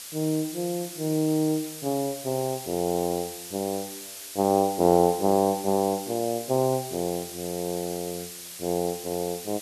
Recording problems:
hiss; slope +3 dB per octave, SNR 10 dB

